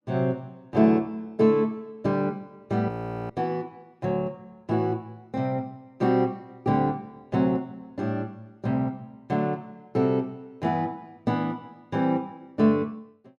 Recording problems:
audio freezing; at 3 s

